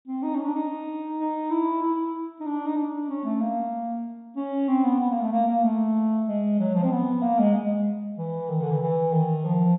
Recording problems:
treble cut off; nothing above 4 kHz

